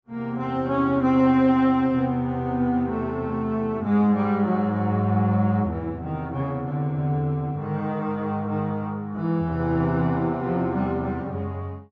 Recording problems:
treble cut off; nothing above 8 kHz

